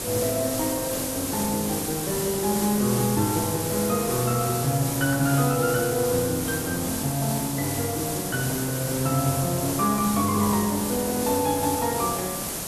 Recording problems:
hiss; SNR 3 dB

